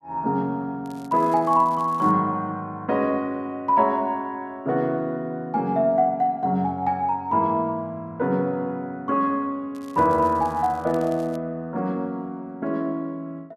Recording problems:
crackling; from 1 to 2 s and from 9.5 to 11 s; loose cable, SNR 27 dB

